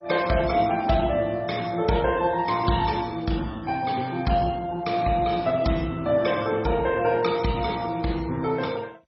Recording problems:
codec artefacts; MP3, then MP2, log-spectral distance 3 dB, nothing above 5.5 kHz

